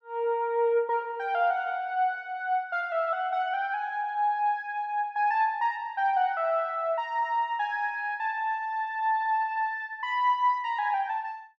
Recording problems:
none

